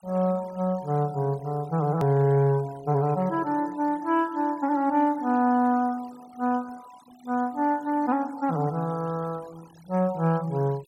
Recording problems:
denoising artefacts; signal-to-artefact ratio 24 dB
click at an edit; at 2 s

